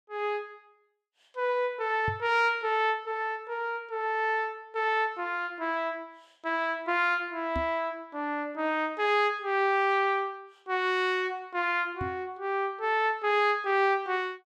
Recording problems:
microphone bump; at 2 s, at 7.5 s and at 12 s; peak -3 dB vs average level

